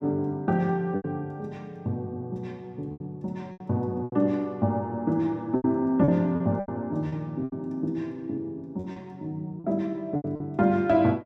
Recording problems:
lost packets; 8% of the sound replaced, filled with repeated pitch periods

